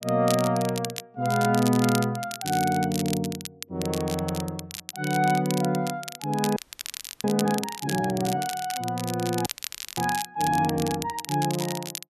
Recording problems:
crackling; vinyl, SNR 9 dB
audio freezing; at 6.5 s for 0.5 s and at 9.5 s for 0.5 s

